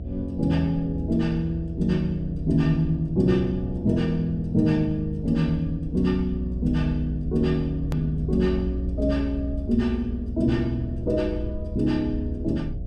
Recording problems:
hum; 60 Hz, harmonics up to 660 Hz, SNR 12 dB
low-frequency rumble; below 80 Hz, strongest tone 60 Hz, SNR 9 dB
edit click; at 8 s

